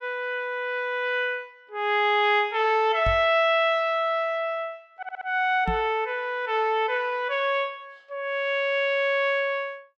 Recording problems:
knock on the microphone; at 3 s and at 5.5 s; peak -2 dB vs average level
audio stuttering; at 5 s

